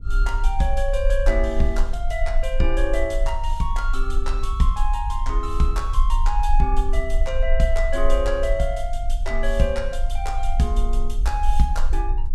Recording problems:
rumble; below 42 Hz, strongest tone 20 Hz, SNR 0 dB

